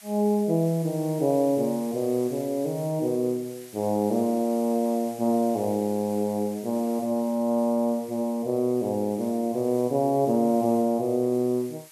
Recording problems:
hiss; slope +3 dB per octave, SNR 21 dB

